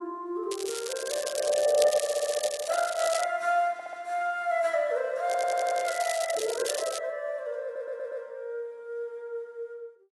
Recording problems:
lossy codec; AAC, log-spectral distance 5 dB, nothing above 11 kHz
crackling; until 3.5 s and from 5.5 to 7 s; loose cable, SNR 7 dB
audio stuttering; 4 times, first at 2 s

